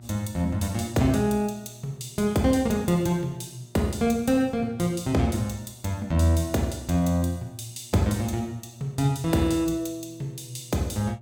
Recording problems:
hum; 60 Hz, harmonics up to 720 Hz, SNR 22 dB

